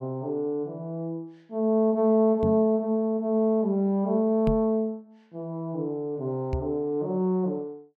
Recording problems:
microphone bump; at 2.5 s, at 4.5 s and at 6.5 s; peak +1 dB vs average level

